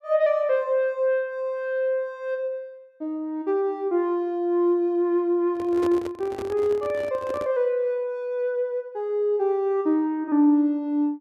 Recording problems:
microphone handling noise; from 5.5 to 7.5 s; peak -6 dB vs average level

